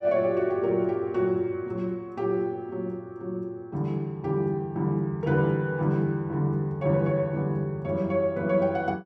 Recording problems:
none

